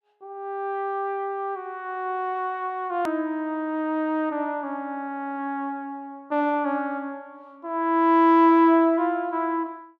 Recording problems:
edit click; at 3 s

